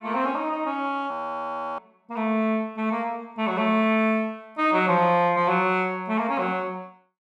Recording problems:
audio freezing; at 1 s for 0.5 s

